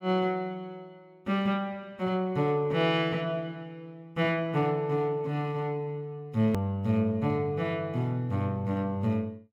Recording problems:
edit click; at 6.5 s

